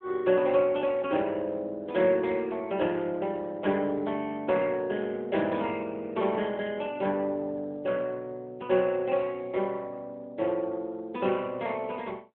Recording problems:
phone line; 150 Hz to 3.4 kHz, AMR-NB

